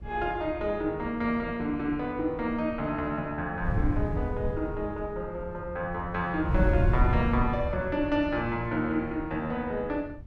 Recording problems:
wind on the microphone; below 110 Hz, SNR 3 dB

